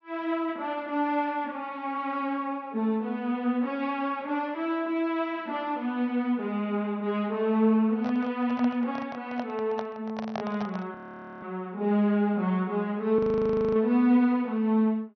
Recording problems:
treble cut off; nothing above 6.1 kHz
microphone handling noise; from 8 to 11 s; peak -3 dB vs average level
frozen audio; at 11 s and at 13 s for 0.5 s

